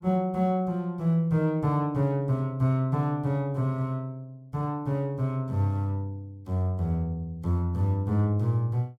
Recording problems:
none

